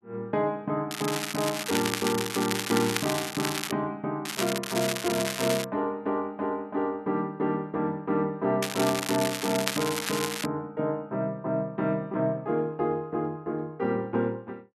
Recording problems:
crackle; 4 times, first at 1 s; loose cable, SNR 3 dB

